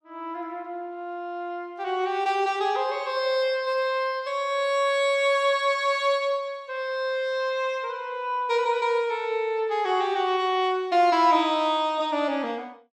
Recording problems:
none

